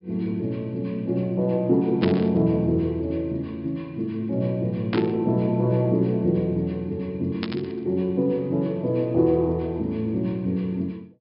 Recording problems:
treble cut off; nothing above 5.5 kHz
burst of static; at 2 s, at 5 s and at 7.5 s; peak -2 dB vs average level

